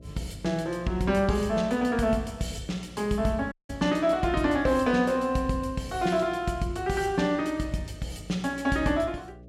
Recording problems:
electrical hum; 60 Hz, harmonics up to 660 Hz, SNR 22 dB
audio cutting out; at 3.5 s

